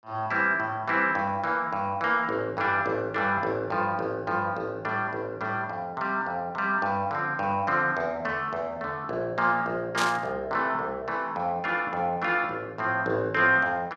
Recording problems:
static burst; at 10 s; peak +1 dB vs average level

